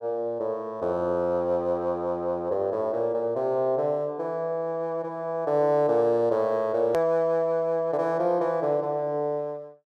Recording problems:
edit click; at 7 s

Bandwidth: 14 kHz